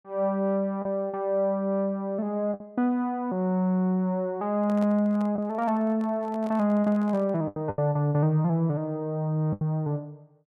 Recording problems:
lost packets; 3% of the sound replaced, filled with the last packet
microphone handling noise; from 4.5 to 7.5 s; peak -11 dB vs average level

